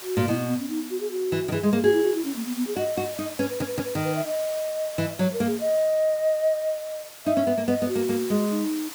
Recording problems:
hiss; SNR 13 dB
audio stuttering; at 3.5 s

